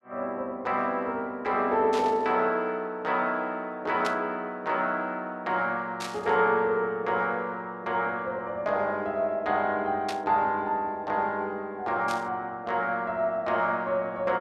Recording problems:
static burst; 5 times, first at 2 s; peak -3 dB vs average level

